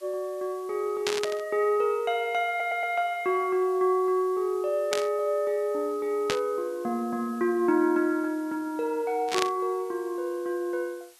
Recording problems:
background hiss; SNR 26 dB
static burst; 4 times, first at 1 s; peak +3 dB vs average level
stutter; at 2.5 s

